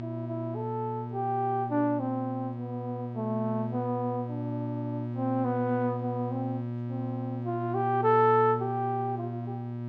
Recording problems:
hum; 60 Hz, harmonics up to 960 Hz, SNR 5 dB

